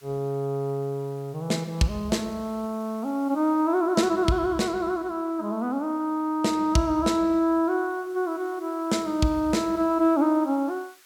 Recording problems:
background hiss; SNR 28 dB

